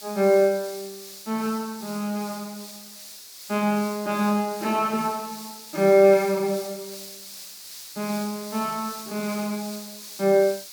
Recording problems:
hiss; SNR 14 dB

